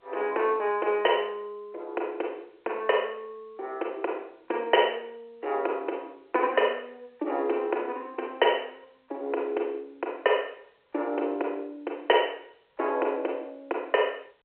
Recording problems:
phone line; 300 Hz to 3.3 kHz, G.711

